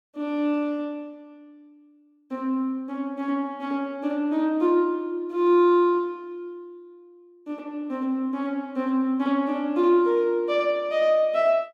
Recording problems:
none

